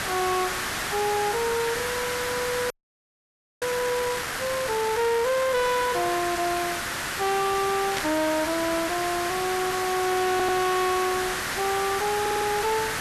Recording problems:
distortion; soft clipping, signal-to-distortion ratio 11 dB
hiss; SNR 3 dB
audio freezing; at 2.5 s for 1 s
burst of static; at 8 s; peak 0 dB vs average level
audio stuttering; at 10 s and at 12 s

